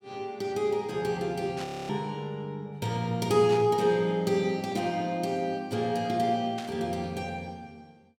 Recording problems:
burst of static; at 1.5 s, at 3.5 s and at 6.5 s; peak -8 dB vs average level
audio freezing; at 1.5 s

